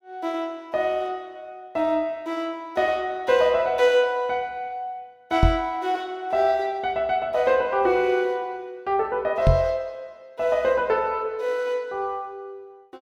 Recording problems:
knock on the microphone; at 5.5 s and at 9.5 s; peak +8 dB vs average level

